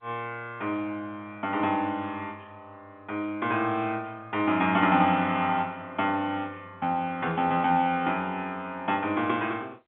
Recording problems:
telephone audio; 190 Hz to 3.5 kHz, G.711

